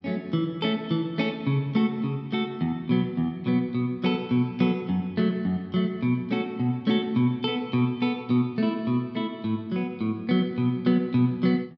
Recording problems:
none

